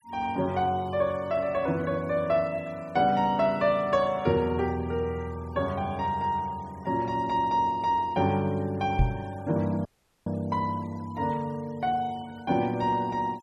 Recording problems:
noise reduction artefacts; signal-to-artefact ratio 26 dB
knock on the microphone; at 9 s; peak +6 dB vs average level
audio cutting out; at 10 s

